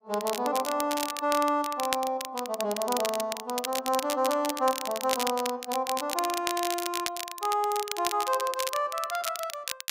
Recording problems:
crackling; vinyl, SNR 6 dB

